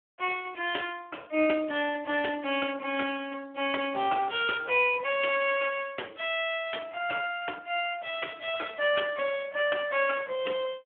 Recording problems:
telephone audio; 240 Hz to 3.3 kHz, Speex

